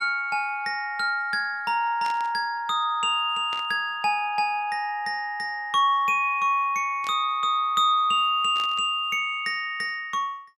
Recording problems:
burst of static; 4 times, first at 2 s; peak -11 dB vs average level

